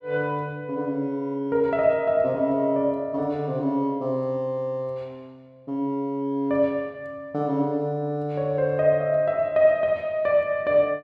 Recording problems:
none

